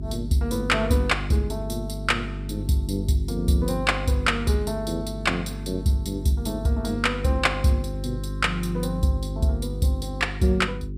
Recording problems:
hum; 50 Hz, harmonics up to 400 Hz, SNR 7 dB

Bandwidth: 15.5 kHz